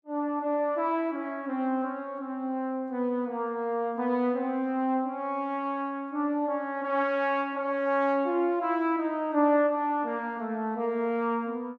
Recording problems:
none

